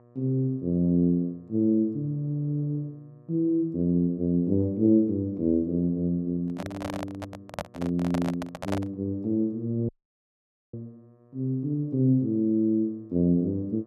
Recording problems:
electrical hum; 60 Hz, harmonics up to 1.3 kHz, SNR 30 dB
microphone handling noise; from 6.5 to 9 s; peak -2 dB vs average level
dropout; at 10 s for 1 s

